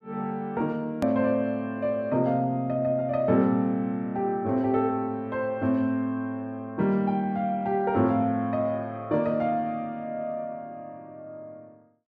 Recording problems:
edit click; at 1 s

